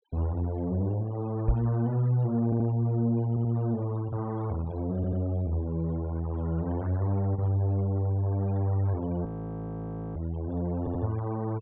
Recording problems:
treble missing; nothing above 4 kHz
noise reduction artefacts; signal-to-artefact ratio 21 dB
microphone thump; at 1.5 s; peak +6 dB vs average level
stutter; 4 times, first at 2.5 s
frozen audio; at 9.5 s for 1 s

